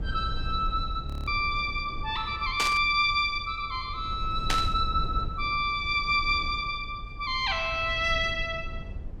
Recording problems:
rumble; below 84 Hz, SNR 11 dB
audio freezing; at 1 s
static burst; at 2.5 s and at 4.5 s; peak +4 dB vs average level

